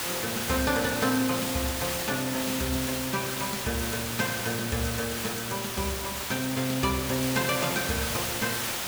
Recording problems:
background hiss; slope -1 dB per octave, SNR 1 dB

